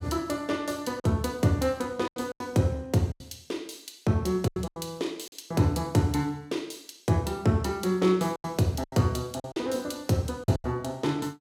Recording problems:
packet loss; 8% of the sound replaced, filled with silence

